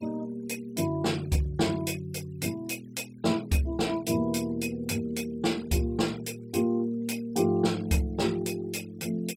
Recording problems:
noise reduction artefacts; signal-to-artefact ratio 22 dB

